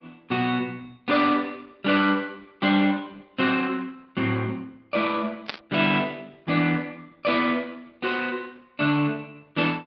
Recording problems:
treble missing; nothing above 5.5 kHz
lossy codec; Opus, log-spectral distance 3 dB
static burst; at 5.5 s; peak -1 dB vs average level

